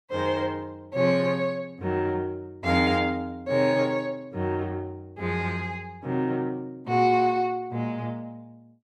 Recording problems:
none

